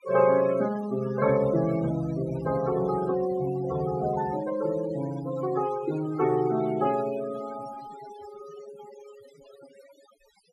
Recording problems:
noise reduction artefacts; signal-to-artefact ratio 15 dB

